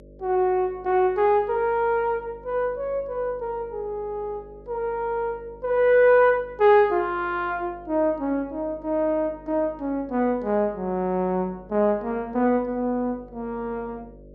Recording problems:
hum; 50 Hz, harmonics up to 600 Hz, SNR 24 dB

